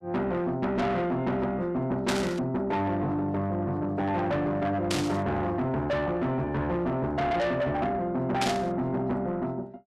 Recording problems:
distorted audio; soft clipping, signal-to-distortion ratio 7 dB
burst of static; at 2 s, at 5 s and at 8.5 s; peak +2 dB vs average level

